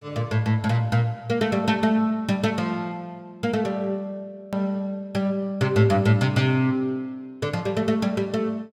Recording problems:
hard cut with a click; at 4.5 s

